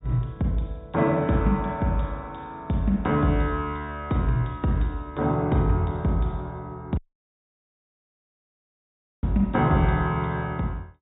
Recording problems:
treble missing; nothing above 4 kHz
dropout; at 7 s for 2.5 s

